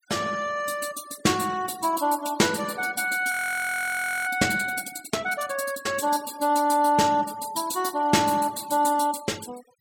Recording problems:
noise reduction artefacts; signal-to-artefact ratio 20 dB
frozen audio; at 3.5 s for 1 s

